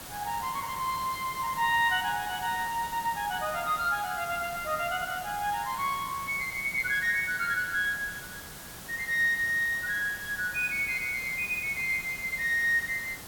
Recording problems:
hiss; slope -2 dB per octave, SNR 12 dB

